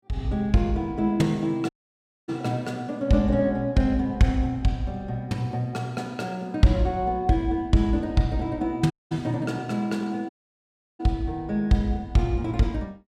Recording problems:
dropout; at 1.5 s for 0.5 s, at 9 s and at 10 s for 0.5 s

